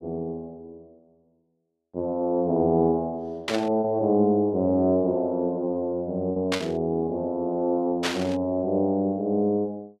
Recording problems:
packet loss; 1.4% of the sound replaced, filled with repeated pitch periods
static burst; at 3.5 s, at 6.5 s and at 8 s; peak +2 dB vs average level

